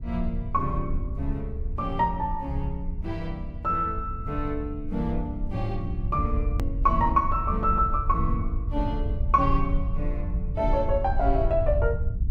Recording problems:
low-frequency rumble; below 70 Hz, SNR 3 dB
hard cut with a click; at 6.5 s

